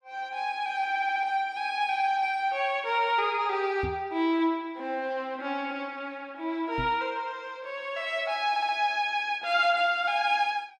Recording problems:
stutter; at 1 s and at 8.5 s
knock on the microphone; at 4 s and at 7 s; peak -3 dB vs average level

